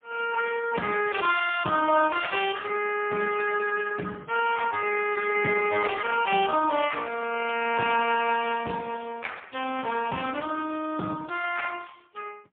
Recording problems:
phone line; 190 Hz to 3.4 kHz, AMR-NB, then MP3

